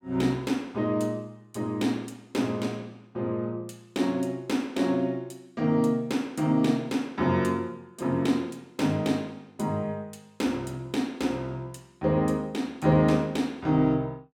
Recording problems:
none

